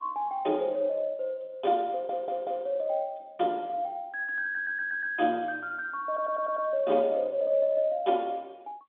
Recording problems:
telephone audio; 190 Hz to 3.7 kHz, G.711
audio stuttering; at 2 s, at 4.5 s and at 6 s

